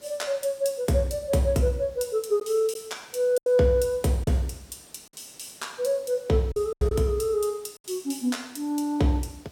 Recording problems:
background hiss; slope -3 dB per octave, SNR 28 dB
lost packets; 3% of the sound replaced, filled with silence

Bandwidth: 17.5 kHz